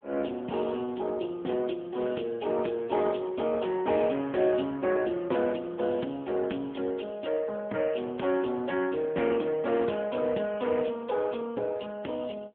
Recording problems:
telephone audio; 220 Hz to 3.5 kHz, AMR-NB

